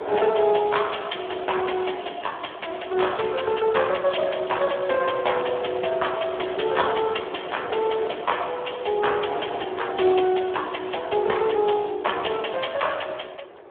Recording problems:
telephone audio; 300 Hz to 3.5 kHz, Speex
wind on the microphone; below 810 Hz, SNR 14 dB

